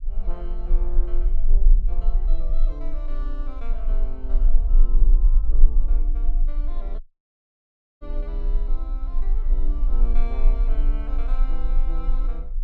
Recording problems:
rumble; below 32 Hz, strongest tone 26 Hz, SNR -16 dB
audio cutting out; at 7 s for 1 s

